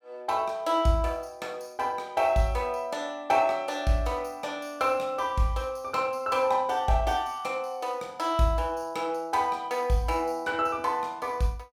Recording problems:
none

